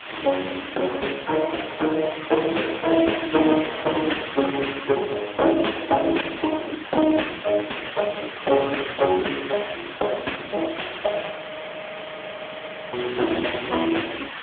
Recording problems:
phone line; 260 Hz to 3.5 kHz, AMR-NB
hiss; SNR 10 dB
audio freezing; at 11 s for 1.5 s

